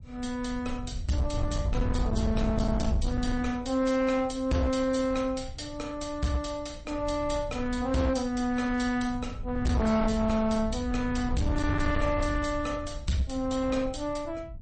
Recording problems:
lossy codec; MP3, log-spectral distance 3 dB, nothing above 8.2 kHz
distortion; hard clipping, uneven, signal-to-distortion ratio 11 dB
low-frequency rumble; below 100 Hz, SNR 6 dB

